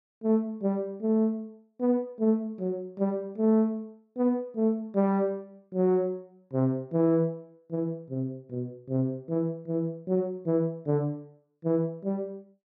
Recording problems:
none

